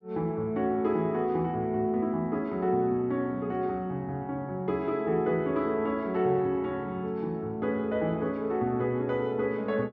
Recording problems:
treble missing; nothing above 7.4 kHz

